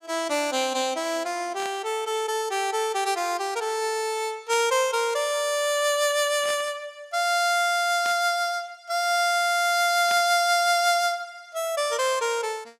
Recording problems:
burst of static; 5 times, first at 1.5 s; peak -8 dB vs average level

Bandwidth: 15.5 kHz